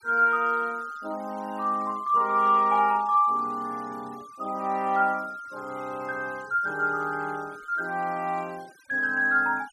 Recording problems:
noise reduction artefacts; signal-to-artefact ratio 26 dB

